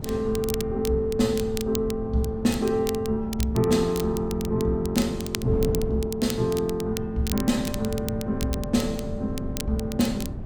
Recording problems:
wind noise; below 210 Hz, SNR 9 dB
crackling; vinyl, SNR 12 dB

